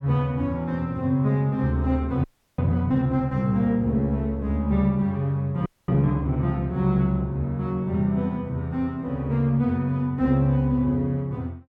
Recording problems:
audio freezing; at 2 s and at 5.5 s

